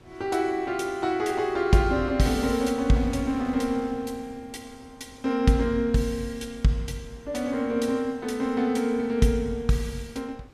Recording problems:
wind noise; below 610 Hz, SNR 23 dB

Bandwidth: 14.5 kHz